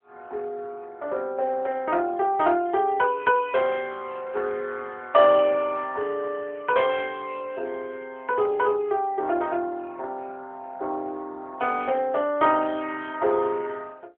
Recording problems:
telephone audio; 320 Hz to 3.5 kHz, AMR-NB

